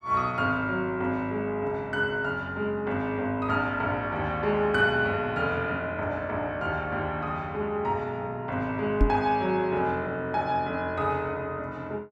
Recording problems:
microphone bump; at 9 s; peak +7 dB vs average level

